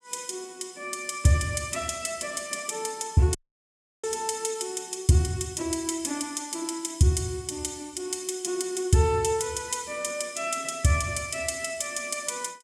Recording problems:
audio cutting out; at 3.5 s for 0.5 s

